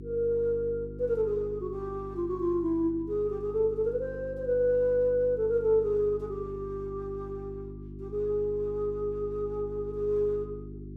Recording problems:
hum; 50 Hz, harmonics up to 400 Hz, SNR 13 dB

